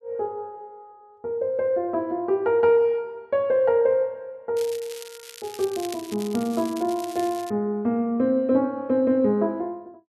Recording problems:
crackle; from 4.5 to 7.5 s; loose cable, SNR 17 dB

